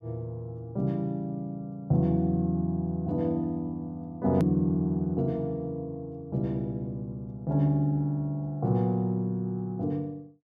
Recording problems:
hard cut with a click; at 4.5 s

